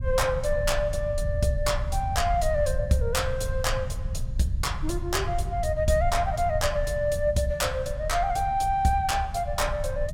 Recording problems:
rumble; below 90 Hz, SNR 6 dB

